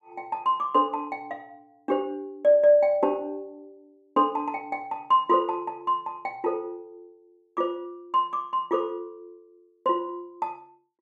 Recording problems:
none

